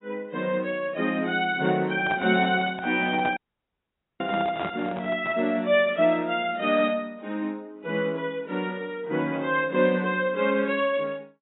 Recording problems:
lossy compression; AAC, log-spectral distance 2 dB, nothing above 3.8 kHz
handling noise; from 2 to 5.5 s; peak -4 dB vs average level
dropout; at 3.5 s for 1 s

